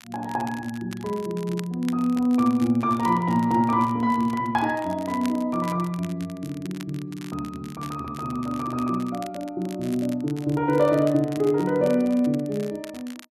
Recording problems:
crackling; vinyl, SNR 21 dB

